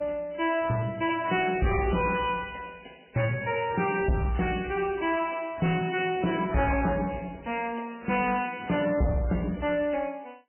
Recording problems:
codec artefacts; MP3, log-spectral distance 6 dB, nothing above 2.4 kHz
distortion; soft clipping, signal-to-distortion ratio 7 dB

